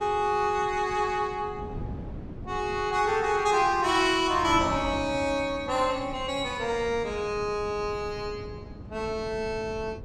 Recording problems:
wind noise; below 260 Hz, SNR 15 dB

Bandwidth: 14.5 kHz